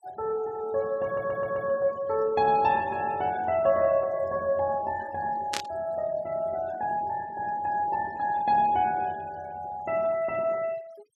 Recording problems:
noise reduction artefacts; signal-to-artefact ratio 23 dB
stutter; at 1 s
static burst; at 5.5 s; peak +1 dB vs average level

